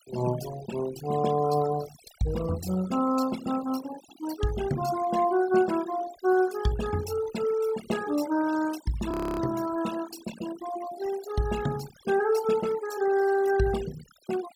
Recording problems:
denoising artefacts; signal-to-artefact ratio 13 dB
frozen audio; at 9 s

